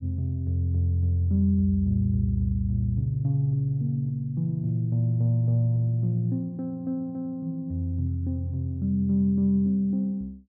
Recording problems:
none

